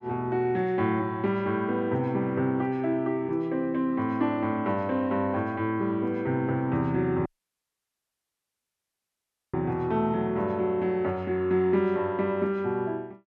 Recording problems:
dropout; at 7.5 s for 2.5 s

